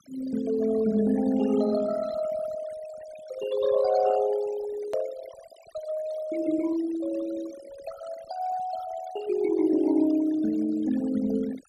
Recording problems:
noise reduction artefacts; signal-to-artefact ratio 16 dB
click at an edit; at 5 s

